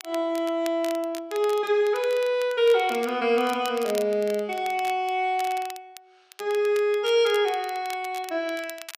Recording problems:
crackling; vinyl, SNR 18 dB

